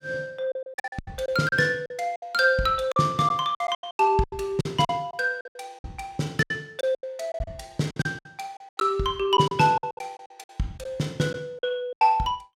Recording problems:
lost packets; 15% of the sound replaced, filled with silence

